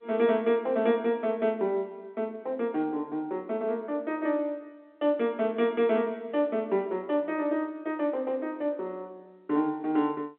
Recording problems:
telephone audio; 190 Hz to 3.6 kHz, G.711

